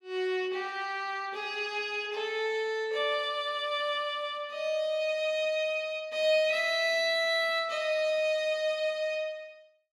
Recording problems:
none

